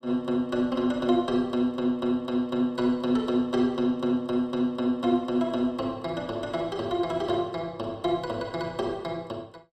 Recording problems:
none

